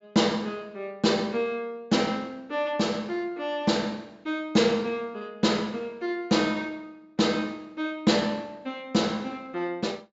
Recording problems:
treble missing; nothing above 7.5 kHz

